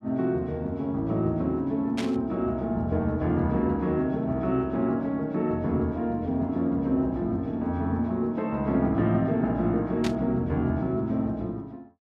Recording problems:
static burst; at 2 s and at 10 s; peak -4 dB vs average level

